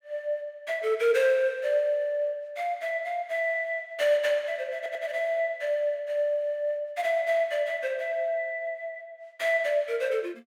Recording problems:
stutter; at 5 s

